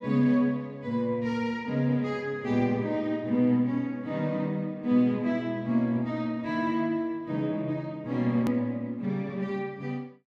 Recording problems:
edit click; at 8.5 s

